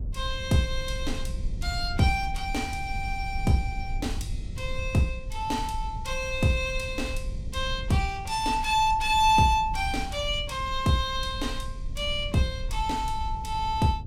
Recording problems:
low-frequency rumble; below 74 Hz, SNR 9 dB

